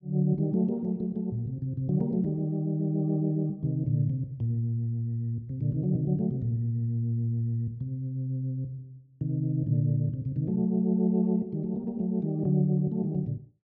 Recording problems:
none

